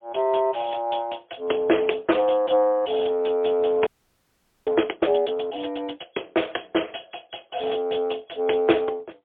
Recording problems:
phone line; 280 Hz to 3.5 kHz, AMR-NB, then MP3
audio freezing; at 4 s for 1 s

